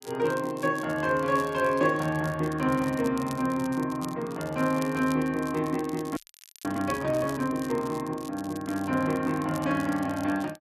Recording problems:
crackle; vinyl, SNR 19 dB
frozen audio; at 6 s

